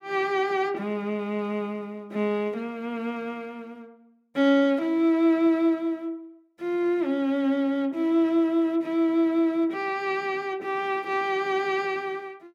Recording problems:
none

